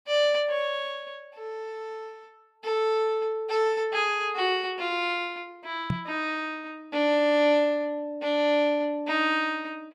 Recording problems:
knock on the microphone; at 6 s; peak +1 dB vs average level

